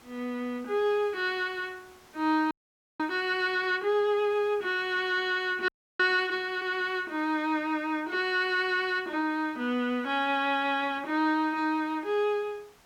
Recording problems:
background hiss; slope -3 dB per octave, SNR 29 dB
frozen audio; at 2.5 s and at 5.5 s

